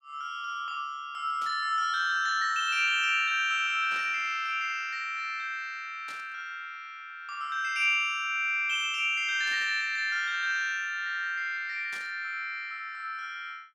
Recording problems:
static burst; 5 times, first at 1.5 s; peak -12 dB vs average level

